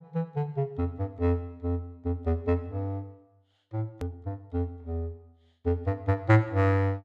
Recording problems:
hard cut with a click; at 4 s

